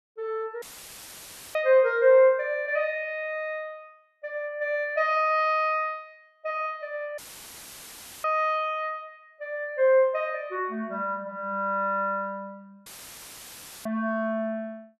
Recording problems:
audio cutting out; at 0.5 s for 1 s, at 7 s for 1 s and at 13 s for 1 s; filled with static

